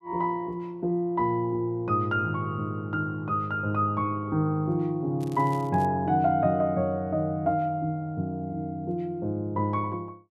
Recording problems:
crackle; at 5 s; loose cable, SNR 25 dB

